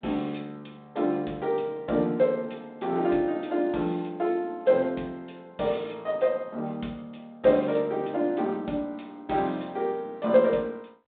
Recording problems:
phone line; 170 Hz to 3.8 kHz, G.726

